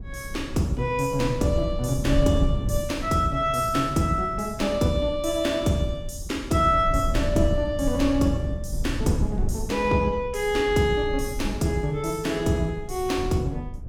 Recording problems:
low-frequency rumble; below 100 Hz, SNR 8 dB

